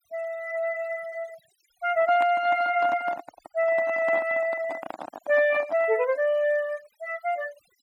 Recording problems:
denoising artefacts; signal-to-artefact ratio 23 dB
handling noise; from 2 to 6 s; peak -5 dB vs average level

